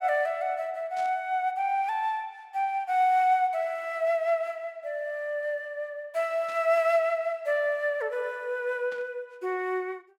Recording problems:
static burst; at 1 s, at 6.5 s and at 9 s; peak -15 dB vs average level

